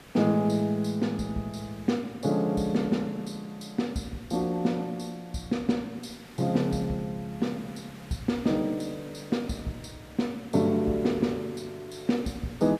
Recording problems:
background hiss; slope -4 dB per octave, SNR 21 dB

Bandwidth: 14.5 kHz